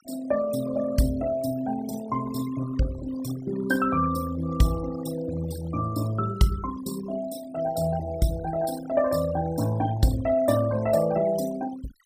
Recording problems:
denoising artefacts; signal-to-artefact ratio 16 dB

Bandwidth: 15.5 kHz